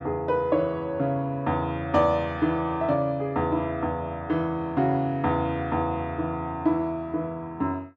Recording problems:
none

